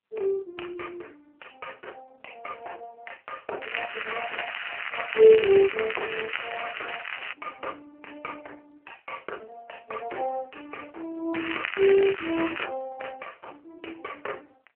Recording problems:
telephone audio; 340 Hz to 3 kHz, AMR-NB
crackle; from 3.5 to 7.5 s and from 11 to 13 s; loose cable, SNR 6 dB

